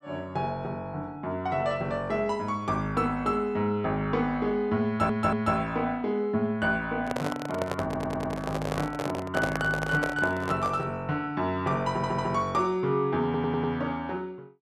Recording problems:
audio stuttering; 4 times, first at 5 s
handling noise; from 7 to 11 s; peak +2 dB vs average level

